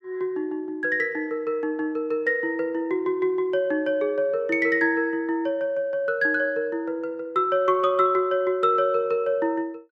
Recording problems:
none

